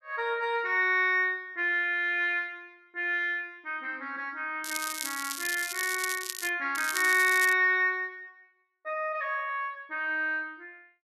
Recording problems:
crackle; from 4.5 to 6.5 s and at 7 s; loose cable, SNR 7 dB

